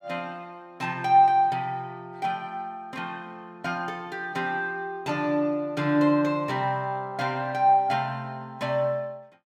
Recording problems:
none

